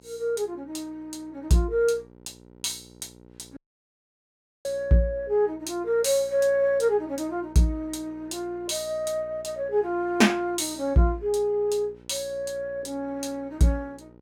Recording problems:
hum; 60 Hz, harmonics up to 1.4 kHz, SNR 25 dB
dropout; at 3.5 s for 1 s

